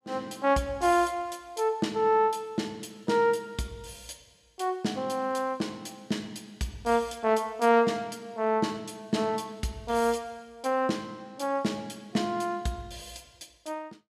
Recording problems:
none

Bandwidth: 13.5 kHz